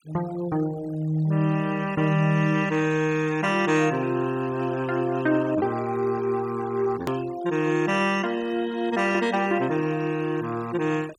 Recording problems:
noise reduction artefacts; signal-to-artefact ratio 19 dB
click at an edit; at 7 s

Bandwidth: 17 kHz